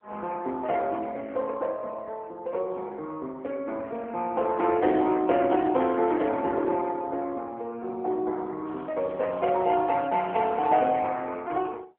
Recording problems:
phone line; 240 Hz to 3.5 kHz, AMR-NB
crackling; from 8.5 to 10 s; loose cable, SNR 29 dB

